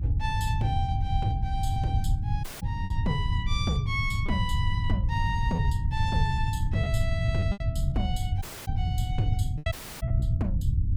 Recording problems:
electrical hum; 60 Hz, harmonics up to 300 Hz, SNR 10 dB
low-frequency rumble; below 110 Hz, SNR -4 dB
packet loss; 5% of the sound replaced, filled with repeated pitch periods
dropout; at 2.5 s, at 8.5 s and at 9.5 s

